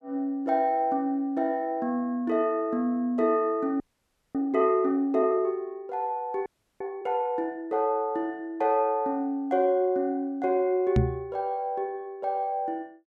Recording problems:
audio freezing; at 4 s for 0.5 s and at 6.5 s
knock on the microphone; at 11 s; peak +7 dB vs average level

